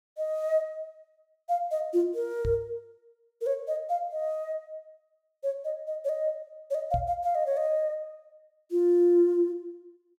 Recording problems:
knock on the microphone; at 2.5 s and at 7 s; peak -2 dB vs average level

